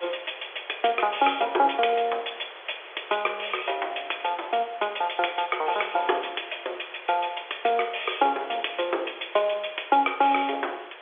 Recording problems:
phone line; 320 Hz to 3.5 kHz, G.711
background hiss; SNR 17 dB

